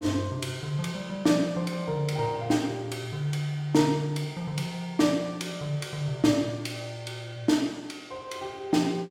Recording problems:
none

